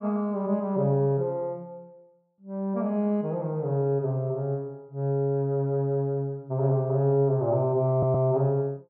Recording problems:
audio stuttering; at 8 s

